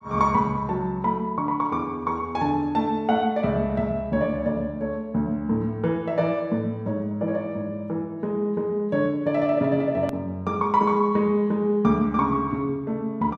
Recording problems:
hard cut with a click; at 10 s

